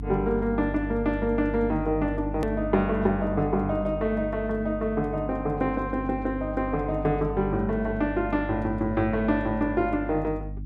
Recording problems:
hum; 50 Hz, harmonics up to 300 Hz, SNR 9 dB
edit click; at 2.5 s

